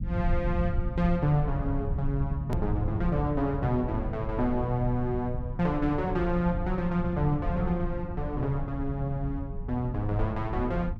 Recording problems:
low-frequency rumble; below 110 Hz, SNR 5 dB
hard cut with a click; at 2.5 s

